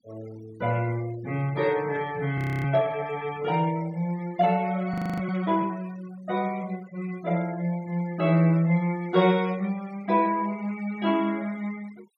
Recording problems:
denoising artefacts; signal-to-artefact ratio 22 dB
frozen audio; at 2.5 s and at 5 s

